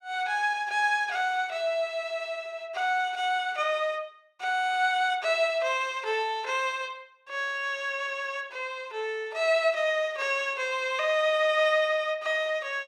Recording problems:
none

